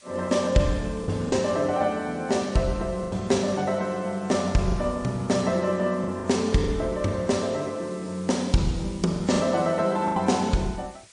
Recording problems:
lossy compression; MP3, log-spectral distance 5 dB, nothing above 8.5 kHz
hiss; SNR 24 dB
packet loss; 4% of the sound replaced, filled with the last packet

